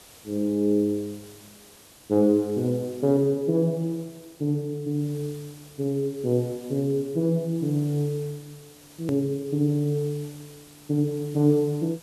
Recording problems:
background hiss; slope -2 dB per octave, SNR 23 dB
edit click; at 9 s

